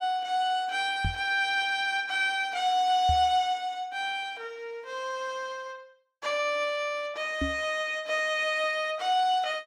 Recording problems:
microphone bump; at 1 s, at 3 s and at 7.5 s; peak 0 dB vs average level

